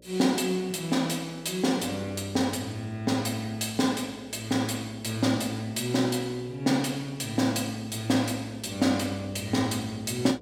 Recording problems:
electrical hum; 60 Hz, harmonics up to 600 Hz, SNR 25 dB

